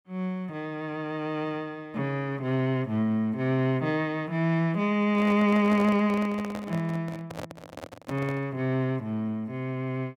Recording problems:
microphone handling noise; from 5 to 8.5 s; peak -6 dB vs average level

